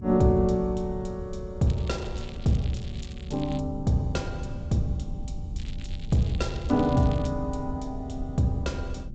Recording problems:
lossy codec; G.722, log-spectral distance 4 dB, nothing above 7.6 kHz
rumble; below 110 Hz, SNR 10 dB
crackling; from 1.5 to 3.5 s and from 5.5 to 7.5 s; loose cable, SNR 20 dB

